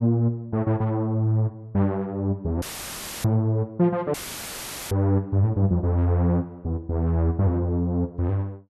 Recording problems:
audio cutting out; at 2.5 s for 0.5 s and at 4 s for 1 s; filled with static

